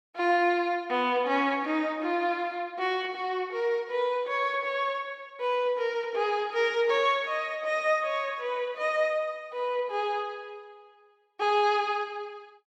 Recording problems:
none

